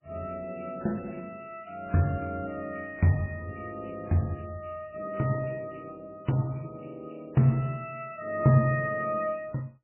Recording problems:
lossy compression; MP3, log-spectral distance 8 dB, nothing above 2.7 kHz

